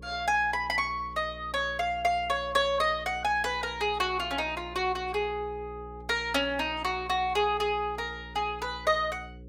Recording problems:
electrical hum; 60 Hz, harmonics up to 540 Hz, SNR 18 dB

